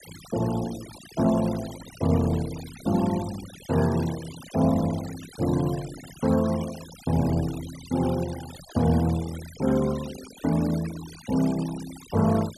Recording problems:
noise reduction artefacts; signal-to-artefact ratio 16 dB

